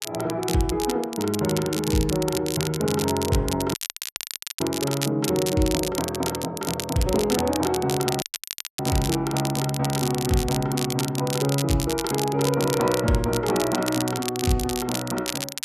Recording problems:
crackle; vinyl, SNR 6 dB
audio cutting out; at 3.5 s for 1 s and at 8 s for 0.5 s

